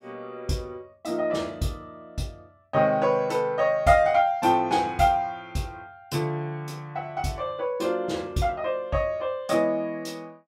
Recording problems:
none

